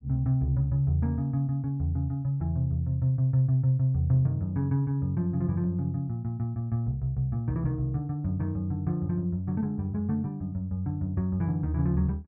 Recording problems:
none

